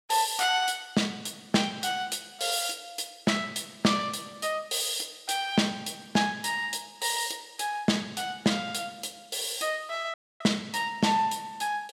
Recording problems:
dropout; at 10 s

